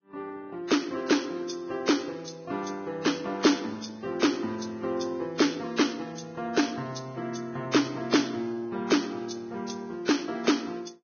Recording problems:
codec artefacts; Vorbis, log-spectral distance 4 dB, nothing above 6.5 kHz

